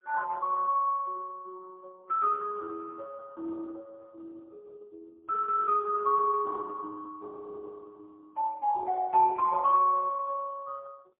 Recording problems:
phone line; 220 Hz to 2.1 kHz, AMR-NB, then MP3

